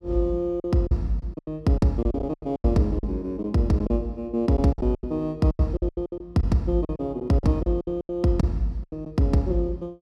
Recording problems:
lost packets; 14% of the sound replaced, filled with silence

